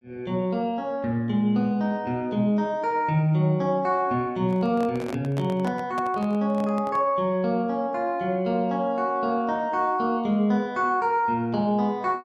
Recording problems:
microphone handling noise; from 4.5 to 7 s; peak -7 dB vs average level

